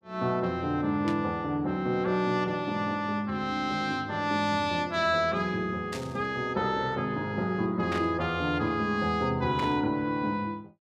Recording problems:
static burst; 4 times, first at 1 s; peak -5 dB vs average level

